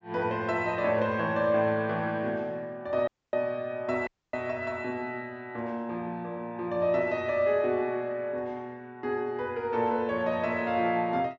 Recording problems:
treble missing; nothing above 8 kHz
dropout; at 3 s and at 4 s

